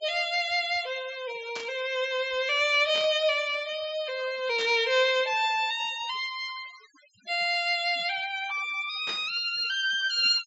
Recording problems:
treble missing; nothing above 8 kHz
noise reduction artefacts; signal-to-artefact ratio 20 dB
burst of static; 4 times, first at 1.5 s; peak -7 dB vs average level

